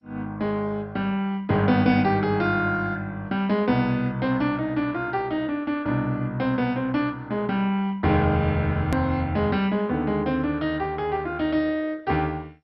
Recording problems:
codec artefacts; MP2, log-spectral distance 2 dB, nothing above 13.1 kHz
click at an edit; at 9 s

